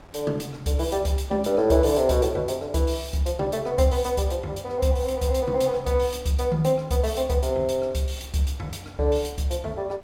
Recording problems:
wind noise; below 880 Hz, SNR 24 dB

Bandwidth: 17 kHz